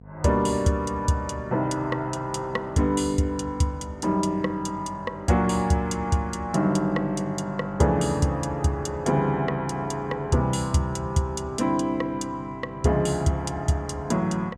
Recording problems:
hum; 50 Hz, harmonics up to 950 Hz, SNR 21 dB

